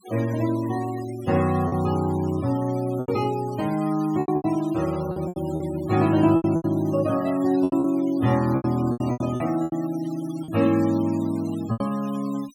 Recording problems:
denoising artefacts; signal-to-artefact ratio 19 dB
lost packets; 10% of the sound replaced, filled with repeated pitch periods

